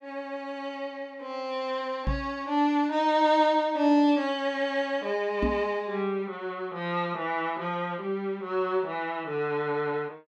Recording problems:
microphone bump; at 2 s and at 5.5 s; peak +2 dB vs average level

